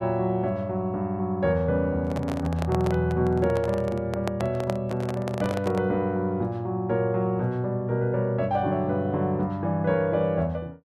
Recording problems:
microphone handling noise; from 2 to 6 s; peak 0 dB vs average level

